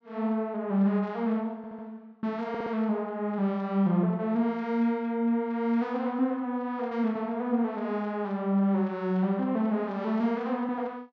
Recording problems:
stutter; at 1.5 s and at 2.5 s

